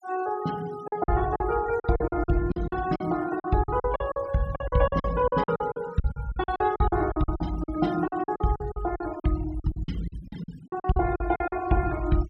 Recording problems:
noise reduction artefacts; signal-to-artefact ratio 19 dB
packet loss; 17% of the sound replaced, filled with silence

